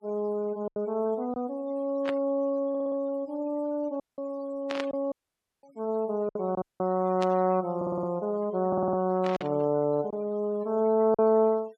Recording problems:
noise reduction artefacts; signal-to-artefact ratio 25 dB
lost packets; 3% of the sound replaced, filled with silence
burst of static; 4 times, first at 2 s; peak -3 dB vs average level
audio stuttering; at 2.5 s, at 8 s and at 8.5 s
audio cutting out; at 4 s, at 5 s for 0.5 s and at 6.5 s

